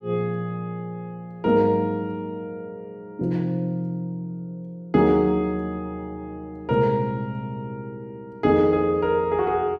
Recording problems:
none

